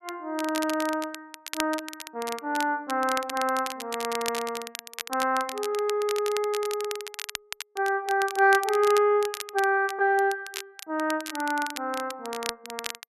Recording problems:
crackling; vinyl, SNR 10 dB

